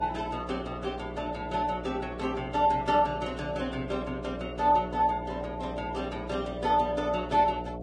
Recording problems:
lossy codec; Vorbis, log-spectral distance 3 dB
electrical hum; 60 Hz, harmonics up to 720 Hz, SNR 9 dB

